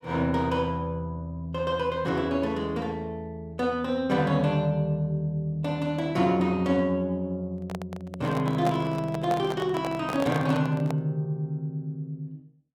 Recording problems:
microphone handling noise; from 7.5 to 11 s; peak -2 dB vs average level

